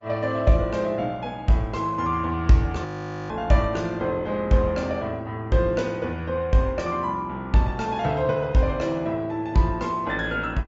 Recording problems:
low-pass filter; nothing above 7.3 kHz
lossy compression; Opus, log-spectral distance 2 dB
frozen audio; at 3 s

